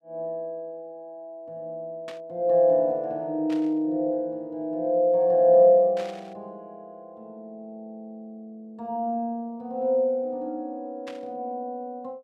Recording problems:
burst of static; 4 times, first at 2 s; peak -13 dB vs average level

